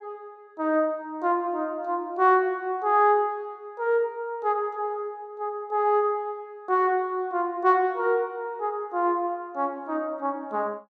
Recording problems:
none

